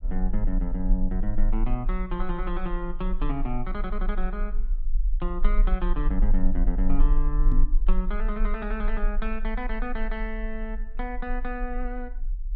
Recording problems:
rumble; below 36 Hz, strongest tone 24 Hz, SNR -3 dB
microphone bump; at 7.5 s; peak +5 dB vs average level

